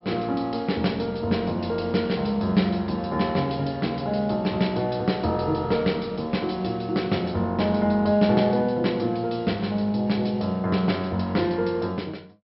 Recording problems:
low-pass filter; nothing above 5.5 kHz

